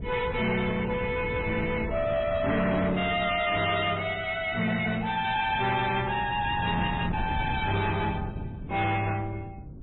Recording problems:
treble missing; nothing above 3.8 kHz
lossy compression; MP3, log-spectral distance 4 dB
distorted audio; soft clipping, signal-to-distortion ratio 10 dB
wind on the microphone; below 250 Hz, SNR 9 dB

